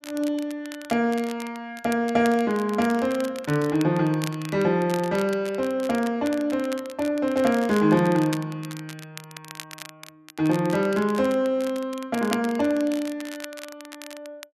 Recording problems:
crackling; vinyl, SNR 17 dB

